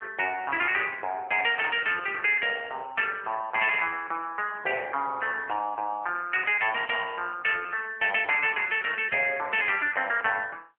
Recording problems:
telephone audio; 280 Hz to 3.3 kHz, AMR-NB

